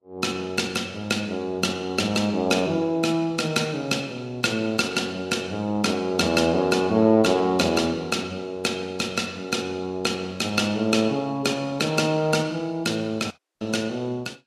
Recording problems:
codec artefacts; Vorbis, log-spectral distance 3 dB, nothing above 13.5 kHz
audio cutting out; at 13 s

